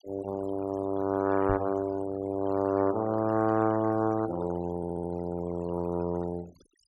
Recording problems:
denoising artefacts; signal-to-artefact ratio 18 dB
microphone bump; at 1.5 s; peak -1 dB vs average level
stutter; at 5 s

